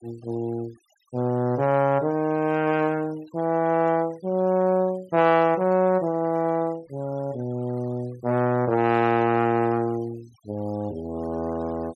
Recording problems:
denoising artefacts; signal-to-artefact ratio 27 dB

